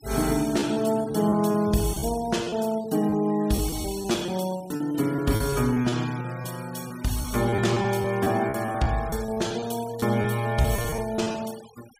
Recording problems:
denoising artefacts; signal-to-artefact ratio 18 dB
packet loss; 11% of the sound replaced, filled with repeated pitch periods

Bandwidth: 15.5 kHz